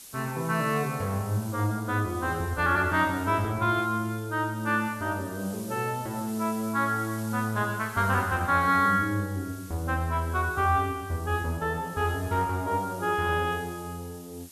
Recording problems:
hiss; SNR 18 dB

